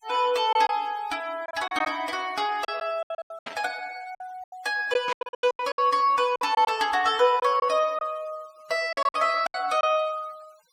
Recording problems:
noise reduction artefacts; signal-to-artefact ratio 23 dB
lost packets; 13% of the sound replaced, filled with silence
static burst; at 3.5 s and at 5 s; peak -7 dB vs average level

